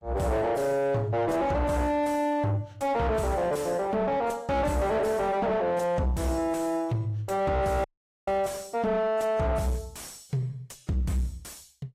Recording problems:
lossy codec; AAC, log-spectral distance 2 dB, nothing above 15.1 kHz
distortion; soft clipping, signal-to-distortion ratio 7 dB
audio cutting out; at 8 s

